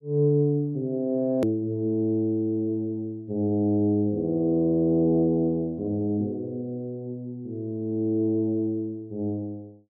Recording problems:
hard cut with a click; at 1.5 s

